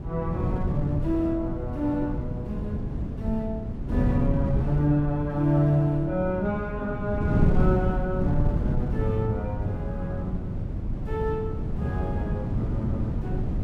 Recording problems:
wind on the microphone; below 180 Hz, SNR 1 dB

